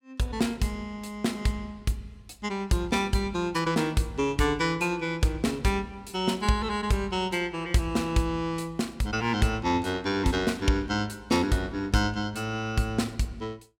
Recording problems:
none

